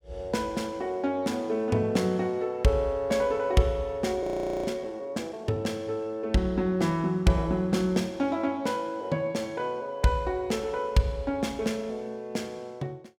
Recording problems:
audio freezing; at 4 s

